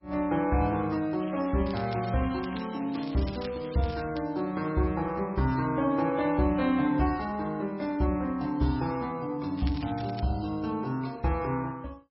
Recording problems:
codec artefacts; MP3, log-spectral distance 5 dB, nothing above 5.2 kHz
crackle; from 1 to 4 s and at 9.5 s; loose cable, SNR 17 dB

